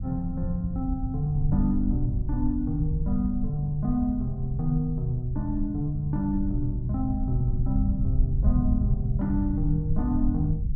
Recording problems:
low-frequency rumble; below 90 Hz, SNR 2 dB

